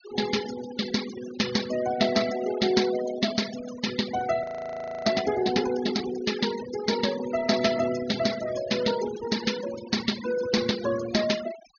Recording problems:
treble cut off; nothing above 6.6 kHz
denoising artefacts; signal-to-artefact ratio 11 dB
audio freezing; at 4.5 s for 0.5 s

